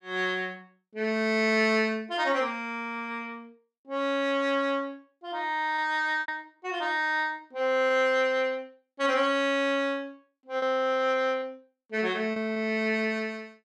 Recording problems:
lost packets; 2% of the sound replaced, filled with repeated pitch periods

